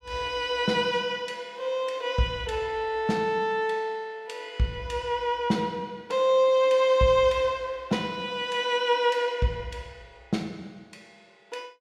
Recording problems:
none

